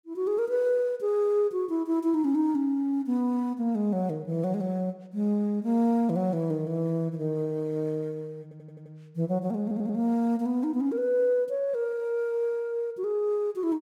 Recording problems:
audio stuttering; at 8.5 s and at 9.5 s

